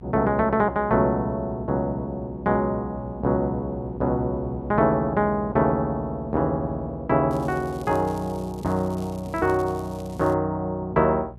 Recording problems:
hum; 60 Hz, harmonics up to 600 Hz, SNR 17 dB
crackling; from 7.5 to 10 s; loose cable, SNR 25 dB

